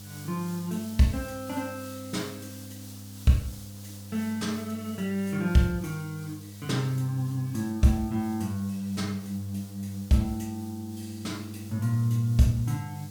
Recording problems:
hum; 50 Hz, harmonics up to 500 Hz, SNR 13 dB
hiss; SNR 19 dB

